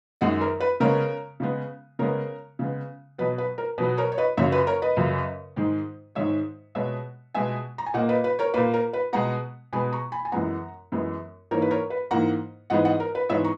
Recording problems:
none

